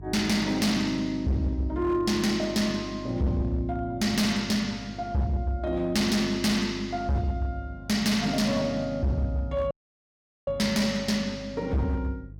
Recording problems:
distortion; hard clipping, signal-to-distortion ratio 8 dB
hum; 50 Hz, harmonics up to 350 Hz, SNR 17 dB
audio cutting out; at 9.5 s for 1 s

